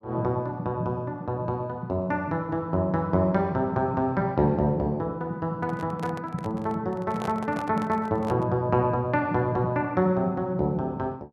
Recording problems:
handling noise; from 5.5 to 8.5 s; peak -5 dB vs average level

